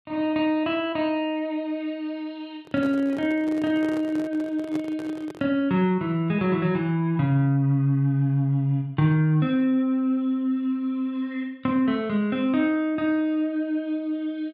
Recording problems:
microphone handling noise; from 2.5 to 5.5 s; peak -8 dB vs average level

